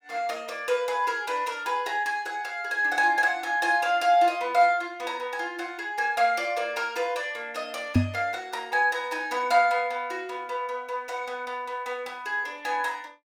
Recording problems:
microphone bump; at 8 s; peak +9 dB vs average level

